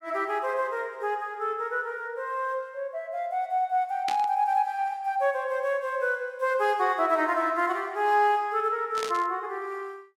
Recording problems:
burst of static; at 4 s and at 9 s; peak -2 dB vs average level

